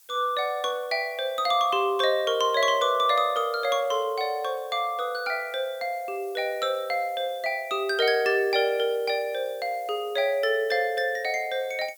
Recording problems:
background hiss; slope +2 dB per octave, SNR 25 dB

